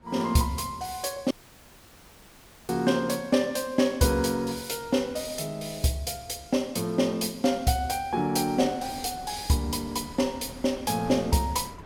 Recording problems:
wind noise; below 610 Hz, SNR 22 dB
audio cutting out; at 1.5 s for 1.5 s

